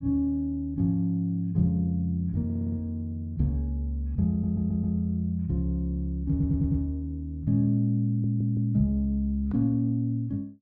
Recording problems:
audio stuttering; 4 times, first at 2.5 s

